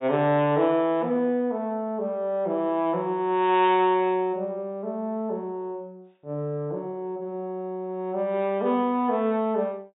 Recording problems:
treble missing; nothing above 4 kHz

